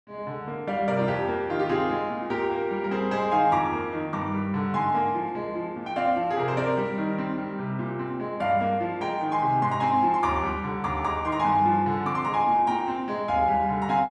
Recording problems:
none

